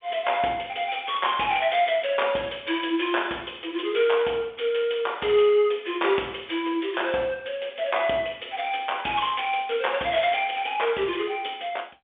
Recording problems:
phone line; 220 Hz to 3.6 kHz, G.711

